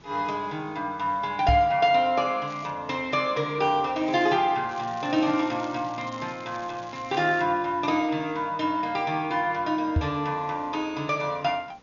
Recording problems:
treble cut off; nothing above 6.9 kHz
background hiss; slope -5 dB per octave, SNR 29 dB
microphone thump; at 1.5 s and at 10 s; peak +5 dB vs average level
crackling; at 2.5 s, at 4 s and from 4.5 to 7.5 s; loose cable, SNR 23 dB

